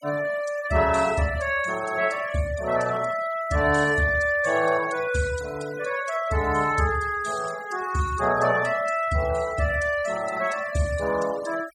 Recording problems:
denoising artefacts; signal-to-artefact ratio 16 dB

